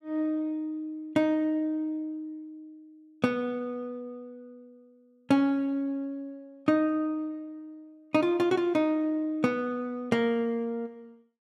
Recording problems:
none

